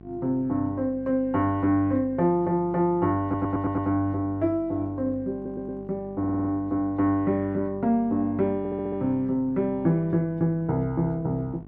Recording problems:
electrical hum; 50 Hz, harmonics up to 1.1 kHz, SNR 20 dB
audio stuttering; 4 times, first at 3 s

